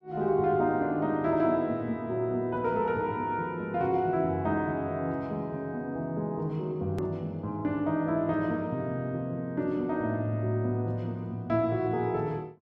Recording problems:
hard cut with a click; at 7 s

